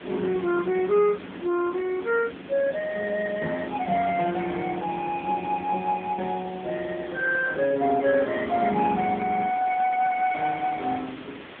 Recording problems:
phone line; 170 Hz to 3.1 kHz, AMR-NB
hiss; SNR 19 dB
wind on the microphone; below 640 Hz, SNR 17 dB

